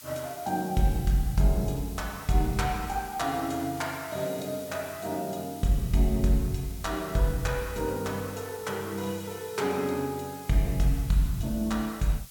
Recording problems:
hiss; slope +3 dB per octave, SNR 16 dB

